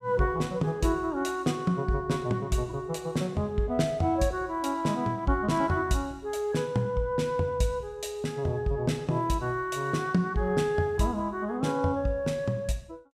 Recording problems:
none

